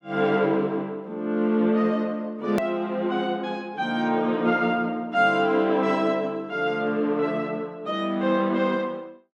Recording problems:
edit click; at 2.5 s

